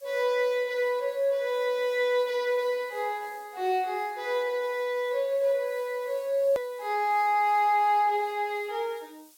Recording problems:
hiss; SNR 27 dB
hard cut with a click; at 6.5 s

